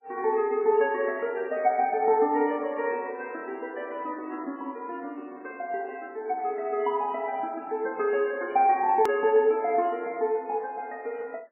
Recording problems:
lossy codec; MP3, log-spectral distance 2 dB, nothing above 15.6 kHz
edit click; at 9 s

